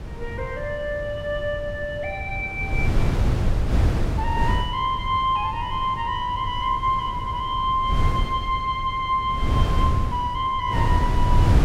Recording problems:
wind on the microphone; below 130 Hz, SNR 2 dB

